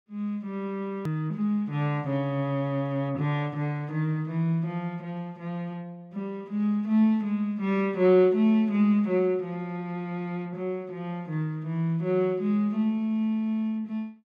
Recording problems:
edit click; at 1 s

